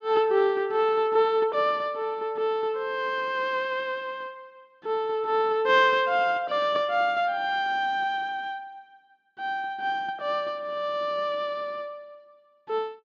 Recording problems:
none

